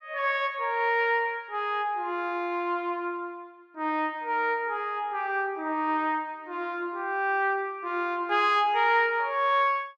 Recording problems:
none

